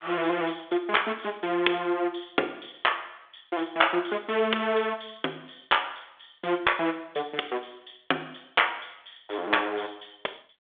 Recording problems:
telephone audio; 280 Hz to 3.5 kHz, G.726

